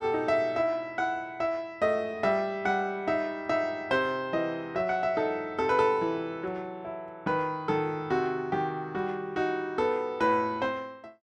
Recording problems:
none

